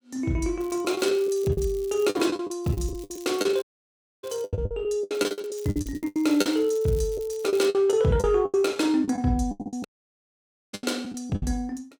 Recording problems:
lost packets; 17% of the sound replaced, filled with the last packet
crackling; from 0.5 to 2.5 s, from 2.5 to 4.5 s and from 5 to 7.5 s; loose cable, SNR 23 dB
dropout; at 3.5 s for 0.5 s and at 10 s for 1 s

